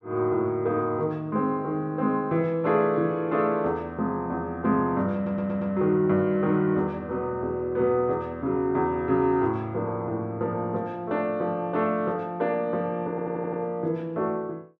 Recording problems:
stutter; at 5 s and at 13 s

